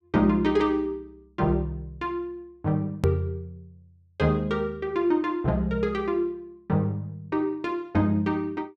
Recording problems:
click at an edit; at 3 s

